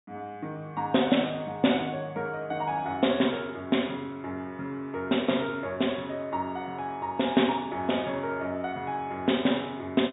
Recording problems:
treble missing; nothing above 4 kHz

